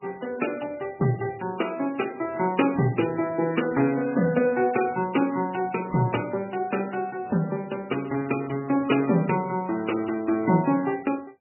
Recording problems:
lossy compression; MP3, log-spectral distance 5 dB, nothing above 2.8 kHz

